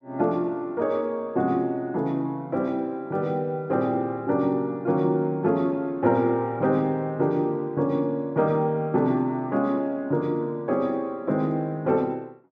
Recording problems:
none

